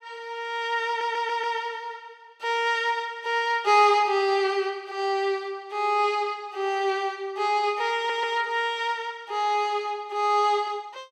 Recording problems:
audio stuttering; at 1 s and at 8 s

